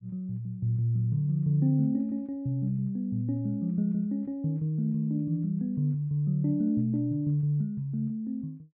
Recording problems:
none

